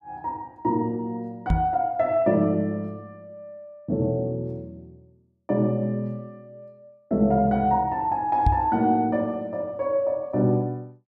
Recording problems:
knock on the microphone; at 1.5 s and at 8.5 s; peak +6 dB vs average level

